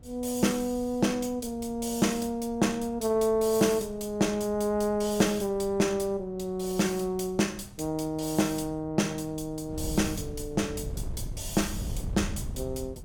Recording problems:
wind noise; below 130 Hz, SNR 14 dB

